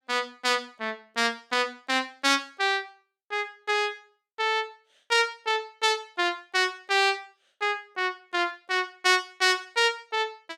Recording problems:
none

